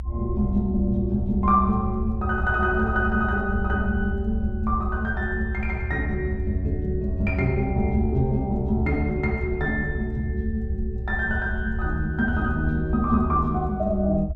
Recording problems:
rumble; below 76 Hz, strongest tone 62 Hz, SNR 5 dB

